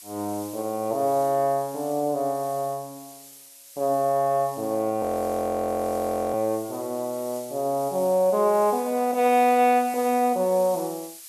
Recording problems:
hiss; slope +5 dB per octave, SNR 18 dB
audio freezing; at 5 s for 1.5 s

